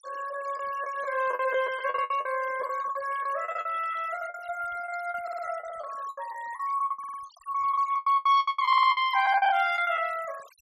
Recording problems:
noise reduction artefacts; signal-to-artefact ratio 20 dB
lost packets; 16% of the sound replaced, filled with the last packet
audio stuttering; at 5 s, at 7 s and at 8.5 s

